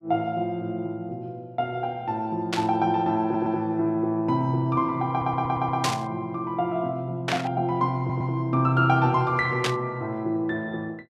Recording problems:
burst of static; 4 times, first at 2.5 s; peak +3 dB vs average level
stutter; at 3 s, at 5 s and at 8 s

